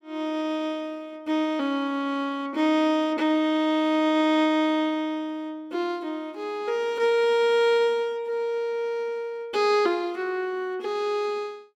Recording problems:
none

